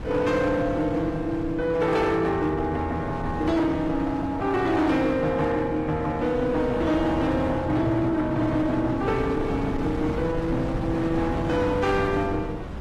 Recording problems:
lossy codec; AAC, log-spectral distance 2 dB, nothing above 13.1 kHz
distorted audio; hard clipping, uneven, signal-to-distortion ratio 12 dB
wind noise; below 480 Hz, SNR 9 dB

